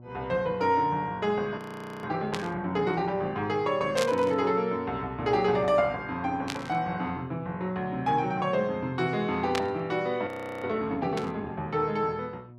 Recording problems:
hum; 60 Hz, harmonics up to 960 Hz, SNR 21 dB
frozen audio; at 1.5 s and at 10 s
static burst; 5 times, first at 2.5 s; peak +1 dB vs average level

